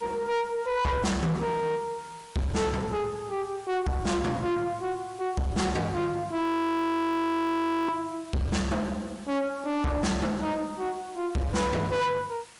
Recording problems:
codec artefacts; MP3, log-spectral distance 4 dB
distorted audio; soft clipping, signal-to-distortion ratio 6 dB
hiss; slope 0 dB per octave, SNR 22 dB
frozen audio; at 6.5 s for 1.5 s

